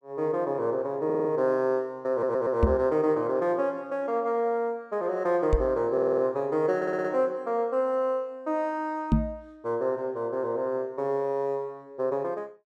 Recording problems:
audio stuttering; 4 times, first at 1 s
knock on the microphone; at 2.5 s, at 5.5 s and at 9 s; peak +8 dB vs average level

